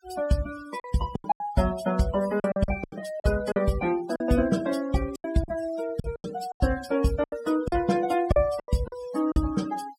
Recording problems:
denoising artefacts; signal-to-artefact ratio 17 dB
lost packets; 12% of the sound replaced, filled with silence

